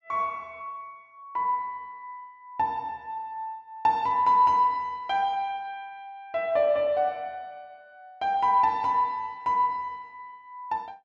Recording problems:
none

